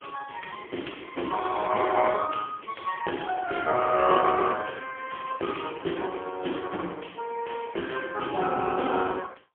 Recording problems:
phone line; 280 Hz to 3.3 kHz, AMR-NB, then MP3

